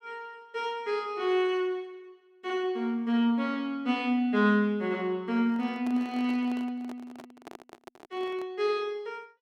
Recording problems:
microphone handling noise; from 5.5 to 8.5 s; peak -10 dB vs average level

